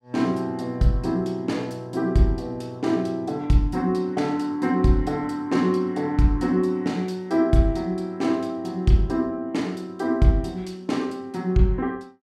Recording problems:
none

